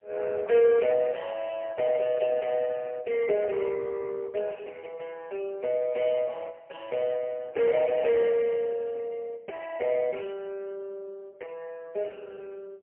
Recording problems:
phone line; 340 Hz to 3 kHz, AMR-NB, then MP3

